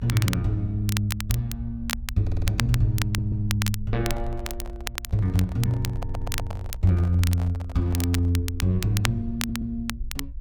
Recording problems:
rumble; below 64 Hz, SNR 12 dB
crackling; vinyl, SNR 9 dB
audio stuttering; 4 times, first at 2 s
microphone handling noise; from 4 to 8.5 s; peak -7 dB vs average level

